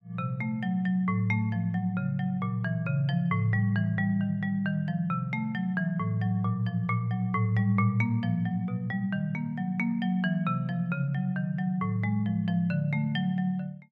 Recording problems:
none

